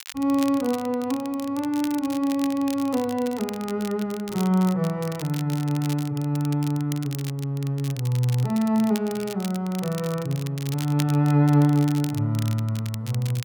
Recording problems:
crackle; vinyl, SNR 16 dB

